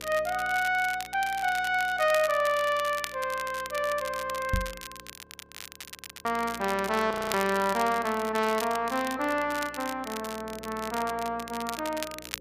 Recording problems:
hum; 60 Hz, harmonics up to 540 Hz, SNR 23 dB
crackle; vinyl, SNR 12 dB
microphone bump; at 4.5 s; peak +3 dB vs average level
audio freezing; at 5 s for 1 s and at 7 s

